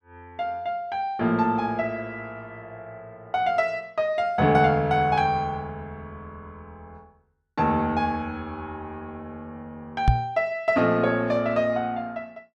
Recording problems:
microphone bump; at 10 s; peak +9 dB vs average level

